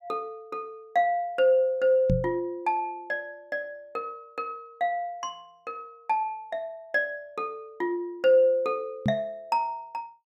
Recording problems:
microphone thump; at 2 s and at 9 s; peak +5 dB vs average level

